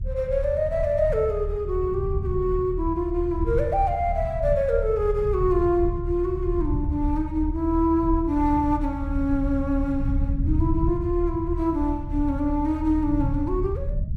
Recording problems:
rumble; below 94 Hz, strongest tone 38 Hz, SNR 5 dB

